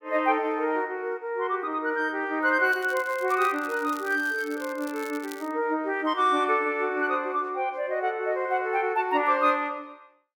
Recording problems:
crackling; from 2.5 to 5.5 s; loose cable, SNR 20 dB

